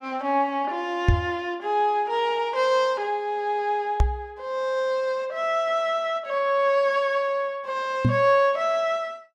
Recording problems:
microphone thump; at 1 s, at 4 s and at 8 s; peak +8 dB vs average level

